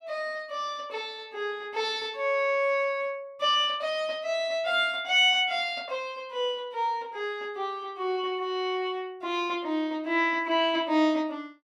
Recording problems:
none

